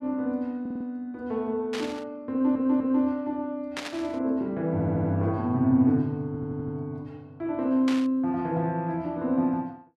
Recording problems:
stutter; 4 times, first at 0.5 s
burst of static; at 1.5 s, at 4 s and at 8 s; peak -2 dB vs average level

